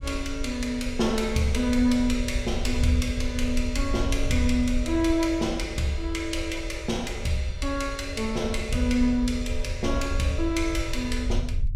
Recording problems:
low-frequency rumble; below 70 Hz, SNR 6 dB

